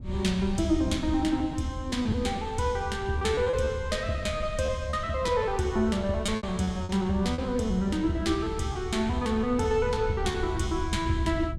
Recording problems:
wind on the microphone; below 110 Hz, SNR 11 dB
packet loss; 6% of the sound replaced, filled with repeated pitch periods

